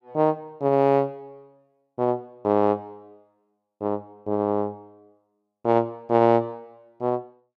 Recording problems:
none

